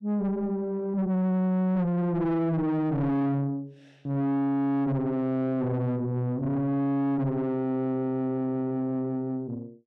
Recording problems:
distortion; soft clipping, signal-to-distortion ratio 6 dB

